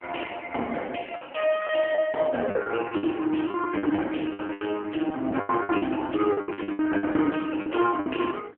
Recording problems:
telephone audio; 240 Hz to 3.1 kHz, AMR-NB
lost packets; 15% of the sound replaced, filled with the last packet

